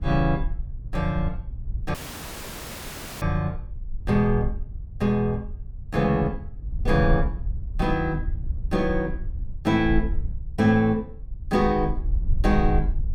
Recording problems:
low-frequency rumble; below 62 Hz, SNR 7 dB
audio cutting out; at 2 s for 1.5 s

